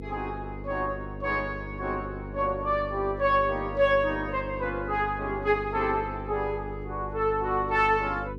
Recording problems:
hum; 50 Hz, harmonics up to 500 Hz, SNR 10 dB

